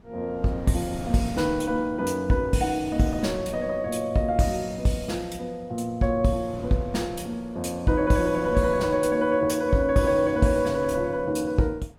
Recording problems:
wind on the microphone; below 350 Hz, SNR 17 dB

